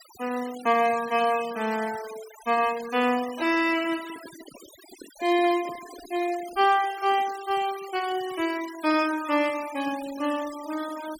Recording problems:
noise reduction artefacts; signal-to-artefact ratio 16 dB
microphone handling noise; from 4 to 7.5 s; peak -11 dB vs average level

